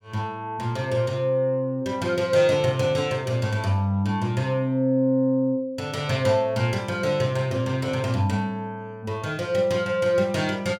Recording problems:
none

